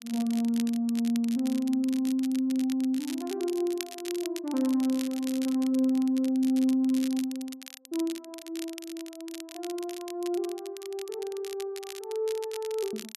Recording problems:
crackling; vinyl, SNR 15 dB

